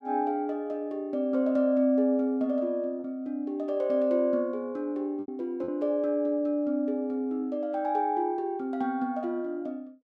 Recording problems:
lost packets; 1.6% of the sound replaced, filled with repeated pitch periods

